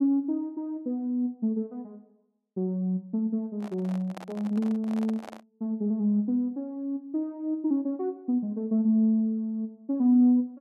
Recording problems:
microphone handling noise; from 3.5 to 5.5 s; peak -9 dB vs average level

